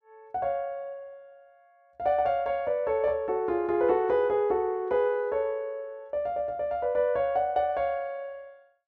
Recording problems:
none

